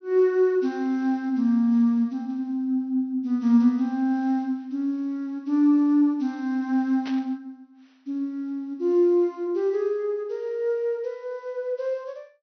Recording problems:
treble cut off; nothing above 6.1 kHz
burst of static; at 7 s; peak -10 dB vs average level

